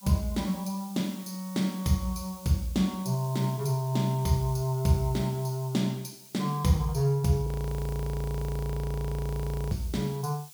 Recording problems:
background hiss; SNR 19 dB
audio freezing; at 7.5 s for 2 s

